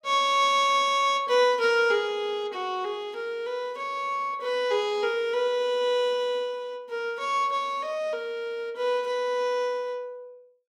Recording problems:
none

